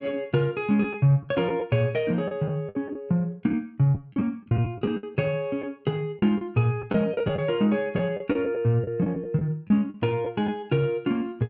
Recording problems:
packet loss; 8% of the sound replaced, filled with the last packet

